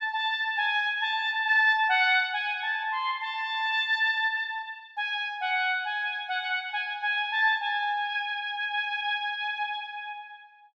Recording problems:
none

